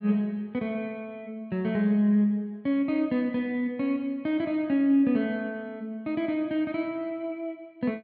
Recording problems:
treble cut off; nothing above 5.5 kHz

